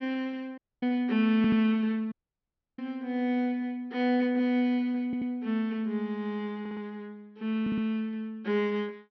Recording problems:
low-pass filter; nothing above 5.7 kHz
dropout; at 0.5 s and at 2 s for 0.5 s
stutter; 4 times, first at 1.5 s

